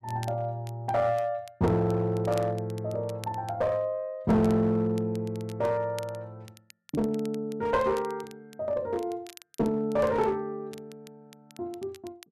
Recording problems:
distorted audio; hard clipping, uneven, signal-to-distortion ratio 11 dB
crackling; vinyl, SNR 23 dB

